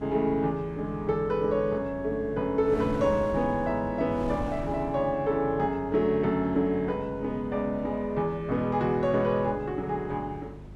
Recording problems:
electrical hum; 50 Hz, harmonics up to 350 Hz, SNR 18 dB
wind on the microphone; below 420 Hz, SNR 17 dB

